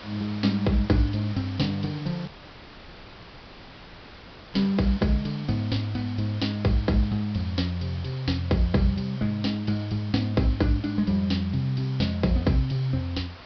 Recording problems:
treble cut off; nothing above 5.5 kHz
background hiss; SNR 18 dB
audio cutting out; at 2.5 s for 2.5 s

